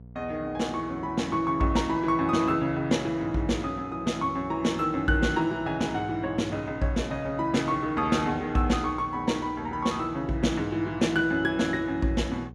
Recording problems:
electrical hum; 60 Hz, harmonics up to 720 Hz, SNR 19 dB

